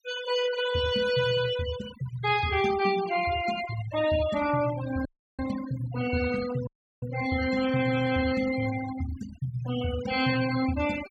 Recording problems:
noise reduction artefacts; signal-to-artefact ratio 11 dB
audio cutting out; at 5 s and at 6.5 s

